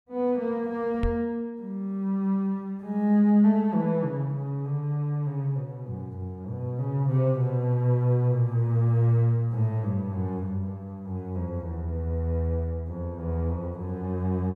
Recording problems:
microphone thump; at 1 s; peak +1 dB vs average level

